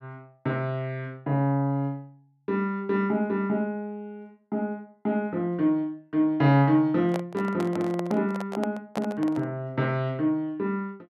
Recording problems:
handling noise; from 7 to 9.5 s; peak -2 dB vs average level

